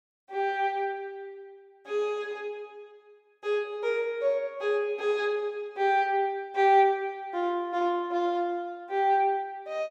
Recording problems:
none

